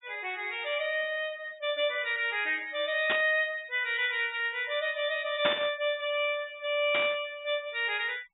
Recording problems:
treble cut off; nothing above 4 kHz
noise reduction artefacts; signal-to-artefact ratio 26 dB
burst of static; at 3 s, at 5.5 s and at 7 s; peak +4 dB vs average level

